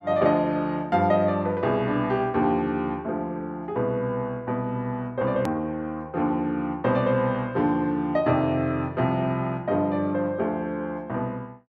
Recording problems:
hard cut with a click; at 5.5 s

